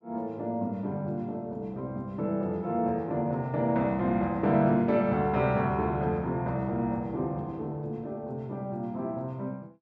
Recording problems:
none

